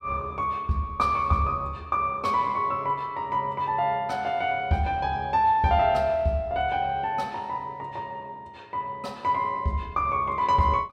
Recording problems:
none

